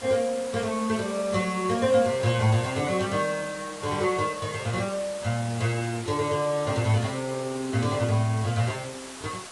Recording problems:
codec artefacts; AAC, log-spectral distance 9 dB, nothing above 10.1 kHz
background hiss; slope -2 dB per octave, SNR 13 dB

